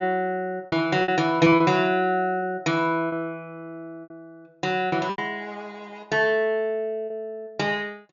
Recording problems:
treble missing; nothing above 7 kHz
lost packets; 6% of the sound replaced, filled with repeated pitch periods

